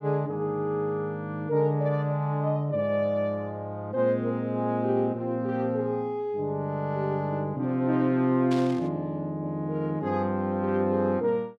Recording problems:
static burst; at 8.5 s; peak -8 dB vs average level

